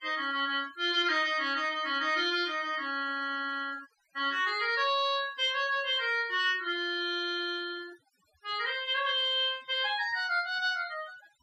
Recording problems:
denoising artefacts; signal-to-artefact ratio 23 dB

